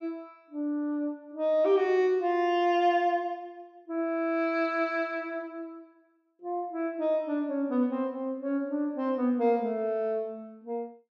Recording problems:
none

